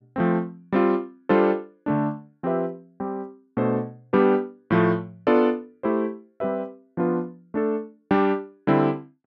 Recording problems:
none

